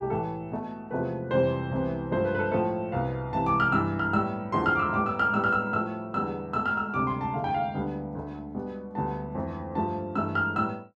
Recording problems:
none

